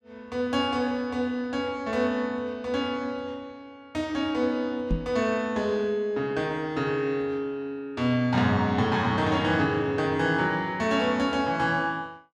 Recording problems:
microphone thump; at 5 s; peak +3 dB vs average level

